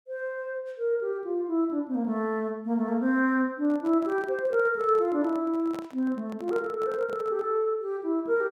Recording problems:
handling noise; from 3.5 to 7.5 s; peak -10 dB vs average level

